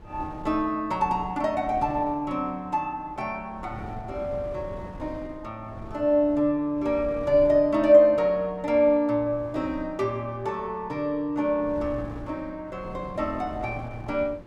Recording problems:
wind on the microphone; below 350 Hz, SNR 18 dB

